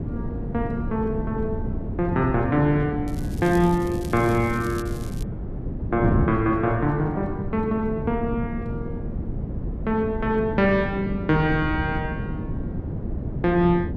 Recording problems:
wind noise; below 230 Hz, SNR 6 dB
crackling; from 3 to 5 s; loose cable, SNR 20 dB

